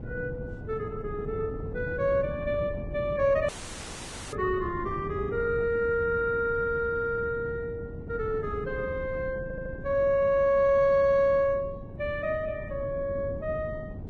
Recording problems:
lossy codec; Vorbis, log-spectral distance 2 dB
wind on the microphone; below 240 Hz, SNR 12 dB
audio cutting out; at 3.5 s for 1 s
audio stuttering; at 9.5 s

